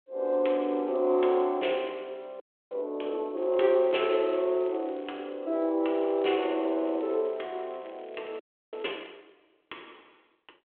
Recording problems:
phone line; 280 Hz to 3.4 kHz, G.726
crackle; at 0.5 s, from 3.5 to 5.5 s and from 6 to 9 s; loose cable, SNR 30 dB
frozen audio; at 2.5 s and at 8.5 s

